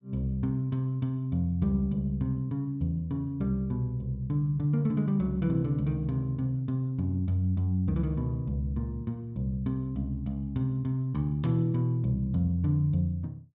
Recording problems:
none

